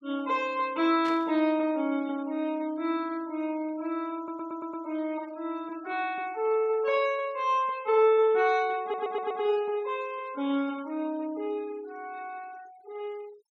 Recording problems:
noise reduction artefacts; signal-to-artefact ratio 25 dB
burst of static; at 1 s; peak -10 dB vs average level
audio stuttering; at 4 s and at 9 s

